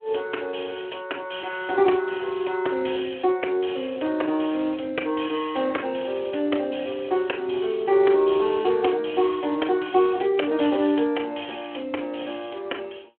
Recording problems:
phone line; 260 Hz to 3.3 kHz, Speex

